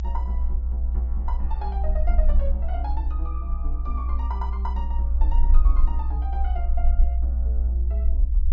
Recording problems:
low-pass filter; nothing above 7.3 kHz
rumble; below 60 Hz, SNR -13 dB

